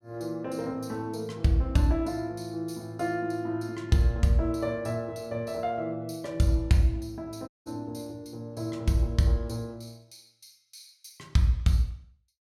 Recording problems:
dropout; at 7.5 s

